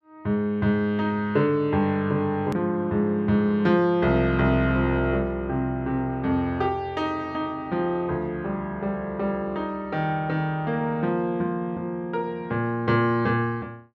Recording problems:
hard cut with a click; at 2.5 s

